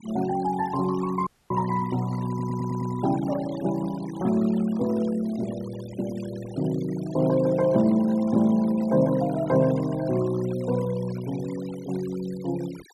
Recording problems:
noise reduction artefacts; signal-to-artefact ratio 19 dB
audio cutting out; at 1.5 s
stutter; at 2.5 s

